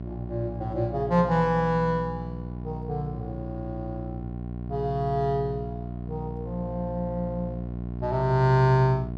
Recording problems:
electrical hum; 60 Hz, harmonics up to 780 Hz, SNR 8 dB

